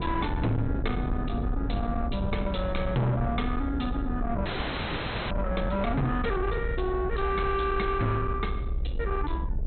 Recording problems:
treble cut off; nothing above 4.1 kHz
distortion; soft clipping, signal-to-distortion ratio 8 dB
rumble; below 150 Hz, SNR 3 dB
audio freezing; at 4.5 s for 1 s

